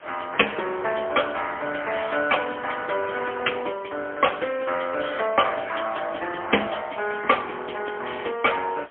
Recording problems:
telephone audio; 300 Hz to 3.2 kHz, AMR-NB, then MP3
background hiss; SNR 24 dB

